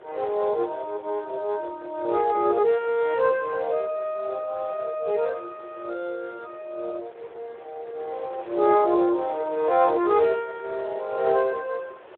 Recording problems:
telephone audio; 300 Hz to 3.7 kHz, Speex
wind on the microphone; below 1 kHz, SNR 21 dB

